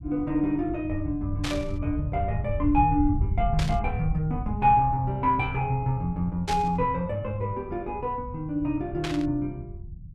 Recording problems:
rumble; below 100 Hz, SNR 8 dB
static burst; 4 times, first at 1.5 s; peak -2 dB vs average level

